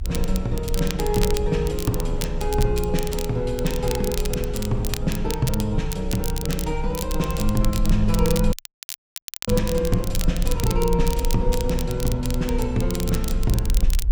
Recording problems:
rumble; below 58 Hz, strongest tone 26 Hz, SNR 4 dB
wind on the microphone; below 240 Hz, SNR 19 dB
crackle; vinyl, SNR 9 dB
dropout; at 8.5 s for 1 s

